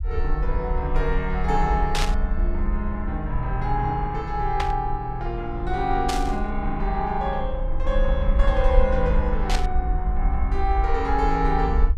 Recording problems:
rumble; below 56 Hz, SNR 1 dB
burst of static; 4 times, first at 2 s; peak +3 dB vs average level

